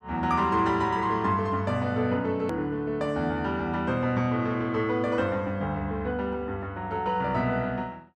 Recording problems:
edit click; at 2.5 s

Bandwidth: 12 kHz